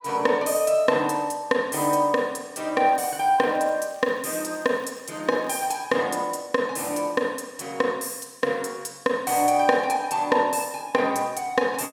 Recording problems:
crackle; from 3 to 6 s; loose cable, SNR 29 dB

